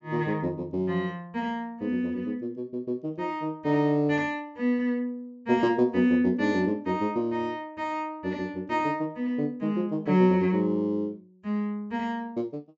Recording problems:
treble cut off; nothing above 8 kHz

